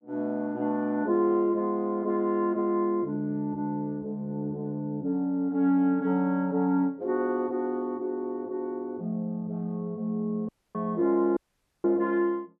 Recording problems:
audio cutting out; at 10 s and at 11 s

